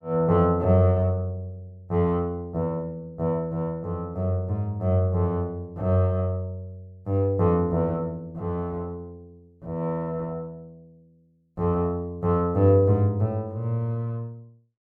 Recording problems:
none

